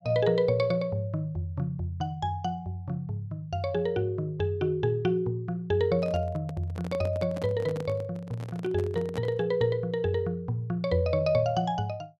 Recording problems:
handling noise; from 6 to 9.5 s; peak -5 dB vs average level

